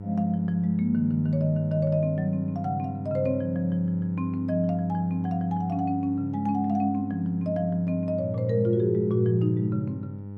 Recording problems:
hum; 50 Hz, harmonics up to 900 Hz, SNR 10 dB

